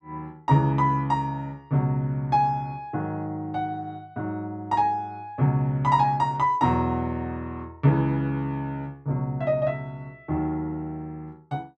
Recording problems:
none

